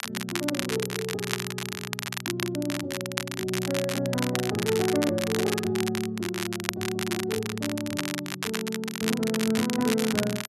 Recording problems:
crackle; vinyl, SNR 3 dB

